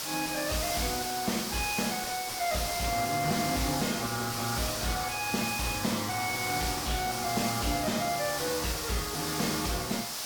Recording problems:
codec artefacts; AAC, log-spectral distance 4 dB
distortion; soft clipping, signal-to-distortion ratio 6 dB
background hiss; SNR 3 dB

